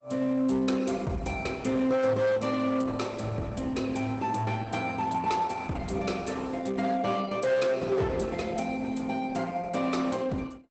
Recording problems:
lossy compression; Opus, log-spectral distance 3 dB, nothing above 8 kHz
distortion; hard clipping, signal-to-distortion ratio 12 dB

